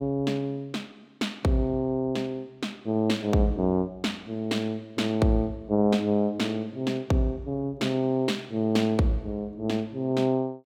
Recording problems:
none

